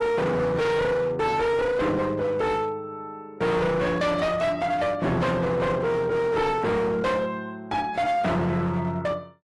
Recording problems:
lossy compression; AAC, log-spectral distance 2 dB, nothing above 11.6 kHz
distortion; hard clipping, signal-to-distortion ratio 7 dB

